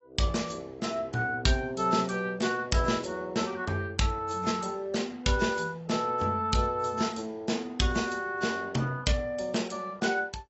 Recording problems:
lossy compression; AAC, log-spectral distance 3 dB, nothing above 7.8 kHz

